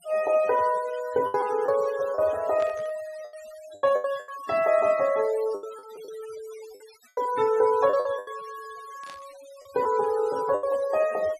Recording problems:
denoising artefacts; signal-to-artefact ratio 18 dB
packet loss; 9% of the sound replaced, filled with the last packet
static burst; at 2.5 s and at 9 s; peak -13 dB vs average level

